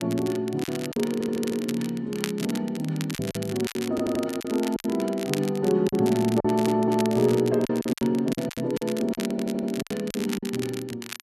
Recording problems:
crackle; vinyl, SNR 13 dB
lost packets; 10% of the sound replaced, filled with silence
audio stuttering; 4 times, first at 1 s

